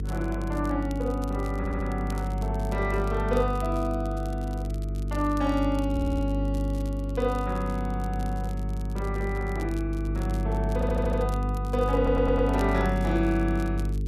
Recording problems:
hum; 50 Hz, harmonics up to 450 Hz, SNR 1 dB
crackle; vinyl, SNR 22 dB
audio stuttering; 4 times, first at 1.5 s

